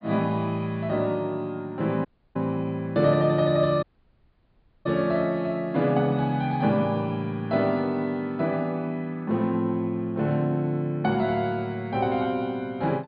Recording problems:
treble cut off; nothing above 4.8 kHz
audio cutting out; at 2 s and at 4 s for 1 s

